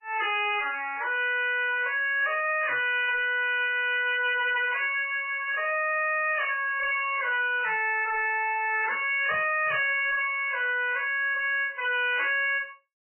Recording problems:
lossy codec; MP3, log-spectral distance 5 dB, nothing above 2.5 kHz
distorted audio; hard clipping, signal-to-distortion ratio 5 dB

